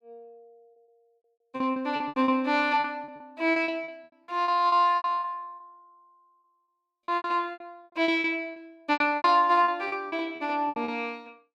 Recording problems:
packet loss; 19% of the sound replaced, filled with repeated pitch periods

